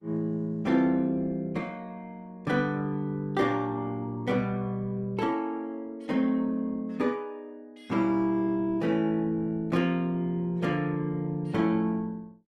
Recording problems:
lossy codec; Opus, log-spectral distance 2 dB, nothing above 15.6 kHz

